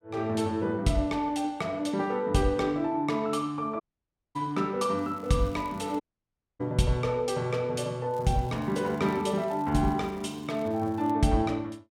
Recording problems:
audio cutting out; at 4 s for 0.5 s and at 6 s for 0.5 s
crackle; from 5 to 6 s and from 8 to 11 s; loose cable, SNR 27 dB

